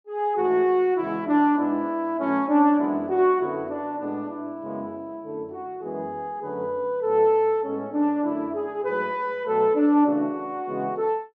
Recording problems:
none

